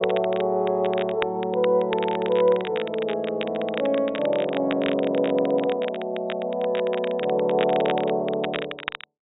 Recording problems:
treble cut off; nothing above 4 kHz
crackling; vinyl, SNR 13 dB

